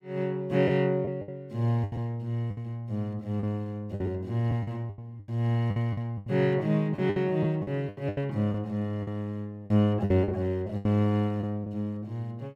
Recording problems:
packet loss; 11% of the sound replaced, filled with the last packet

